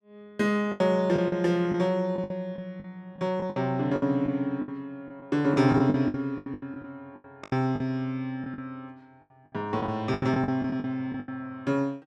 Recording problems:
packet loss; 14% of the sound replaced, filled with the last packet

